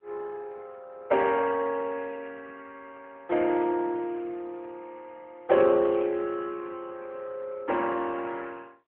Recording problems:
phone line; 280 Hz to 3.3 kHz, AMR-NB

